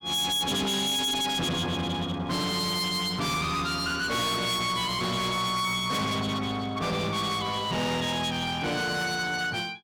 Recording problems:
distorted audio; hard clipping, uneven, signal-to-distortion ratio 5 dB

